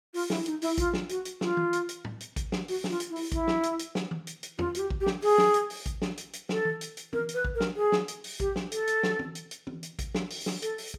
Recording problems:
none

